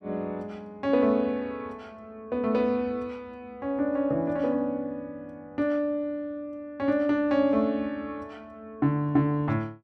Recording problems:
none

